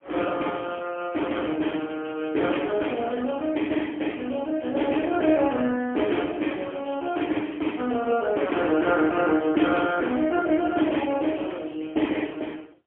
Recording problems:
phone line; 220 Hz to 3.3 kHz, AMR-NB, then MP3

